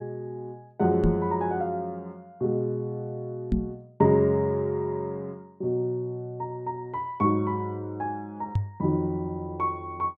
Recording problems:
microphone thump; at 1 s, at 3.5 s and at 8.5 s; peak +7 dB vs average level

